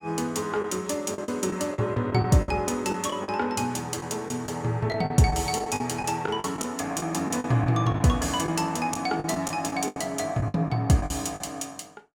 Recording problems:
packet loss; 11% of the sound replaced, filled with the last packet

